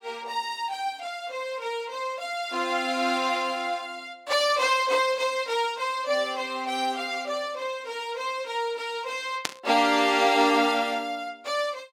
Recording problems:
burst of static; at 9.5 s; peak +3 dB vs average level

